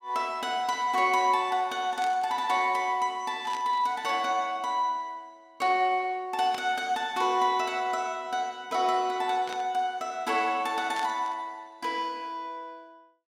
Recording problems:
static burst; 5 times, first at 2 s; peak -8 dB vs average level

